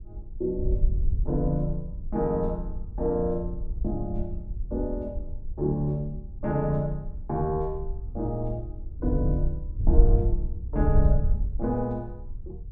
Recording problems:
wind noise; below 64 Hz, SNR 1 dB

